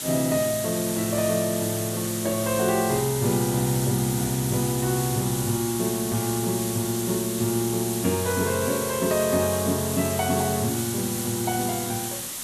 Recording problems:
hiss; SNR 4 dB

